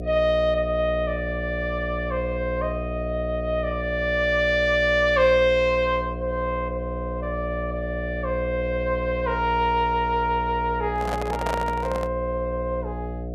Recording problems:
hum; 60 Hz, harmonics up to 720 Hz, SNR 7 dB
microphone handling noise; from 11 to 12 s; peak -1 dB vs average level

